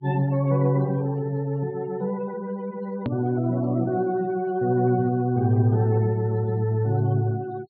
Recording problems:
treble cut off; nothing above 4.5 kHz
denoising artefacts; signal-to-artefact ratio 23 dB
click at an edit; at 3 s

